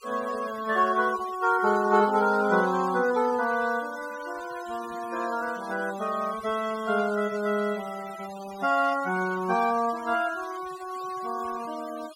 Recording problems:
noise reduction artefacts; signal-to-artefact ratio 19 dB

